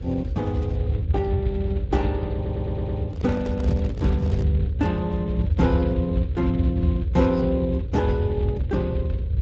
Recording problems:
codec artefacts; Opus, then Speex, log-spectral distance 2 dB
mains hum; 60 Hz, harmonics up to 540 Hz, SNR 19 dB
rumble; below 94 Hz, SNR 0 dB
audio stuttering; at 2.5 s
handling noise; from 3 to 4.5 s; peak -5 dB vs average level

